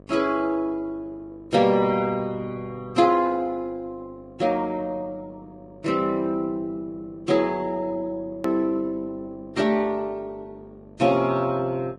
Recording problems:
lossy codec; Vorbis, log-spectral distance 2 dB, nothing above 15.1 kHz
electrical hum; 50 Hz, harmonics up to 1.3 kHz, SNR 24 dB
click at an edit; at 8.5 s

